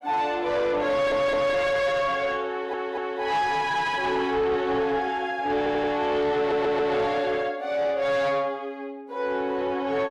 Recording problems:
distorted audio; soft clipping, signal-to-distortion ratio 10 dB
audio stuttering; 4 times, first at 1 s

